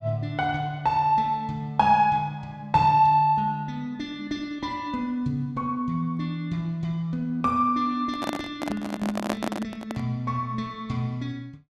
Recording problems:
handling noise; from 8 to 10 s; peak +2 dB vs average level

